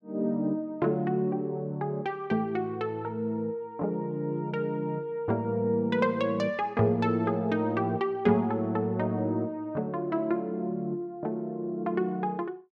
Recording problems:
none

